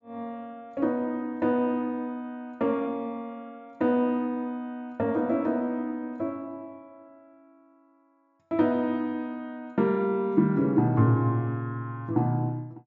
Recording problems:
low-pass filter; nothing above 8 kHz

